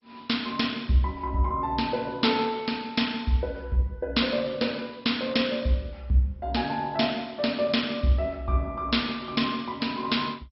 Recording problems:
lossy compression; MP2, log-spectral distance 3 dB, nothing above 5.5 kHz

